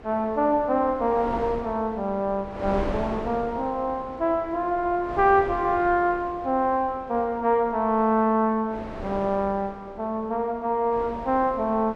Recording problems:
wind on the microphone; below 770 Hz, SNR 14 dB

